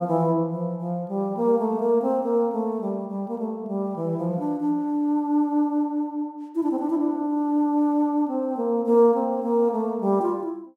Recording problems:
none

